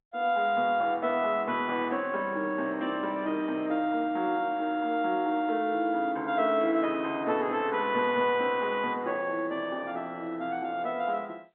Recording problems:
telephone audio; 220 Hz to 3.9 kHz, G.711

